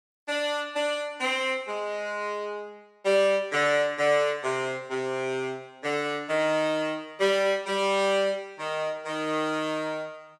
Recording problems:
none

